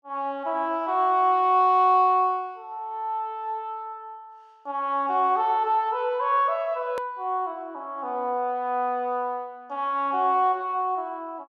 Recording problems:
hard cut with a click; at 7 s

